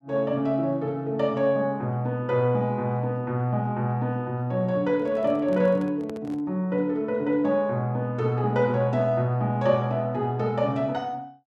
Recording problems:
handling noise; from 5 to 6.5 s; peak -10 dB vs average level

